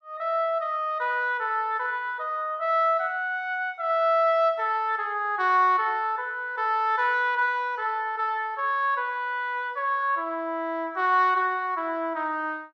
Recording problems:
none

